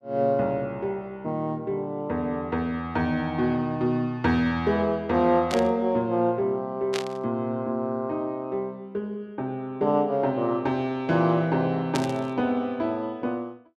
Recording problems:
burst of static; at 5.5 s, at 7 s and at 12 s; peak -1 dB vs average level

